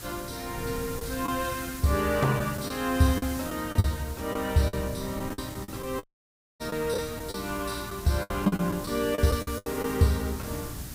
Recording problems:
electrical hum; 60 Hz, harmonics up to 420 Hz, SNR 19 dB
hiss; SNR 13 dB
wind on the microphone; below 240 Hz, SNR 14 dB
packet loss; 8% of the sound replaced, filled with the last packet
audio cutting out; at 6 s for 0.5 s

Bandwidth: 15.5 kHz